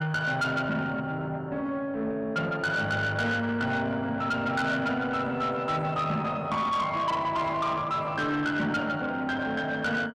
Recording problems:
distortion; soft clipping, signal-to-distortion ratio 11 dB

